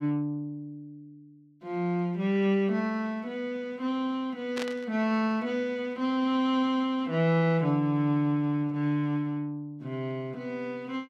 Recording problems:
burst of static; at 4.5 s; peak -3 dB vs average level

